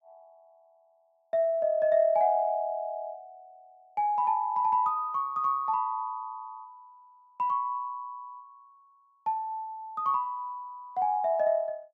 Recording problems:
none

